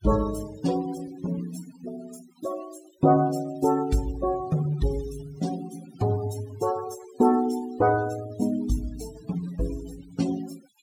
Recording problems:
noise reduction artefacts; signal-to-artefact ratio 17 dB

